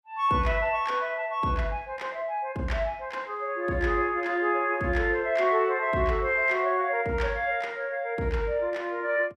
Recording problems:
none

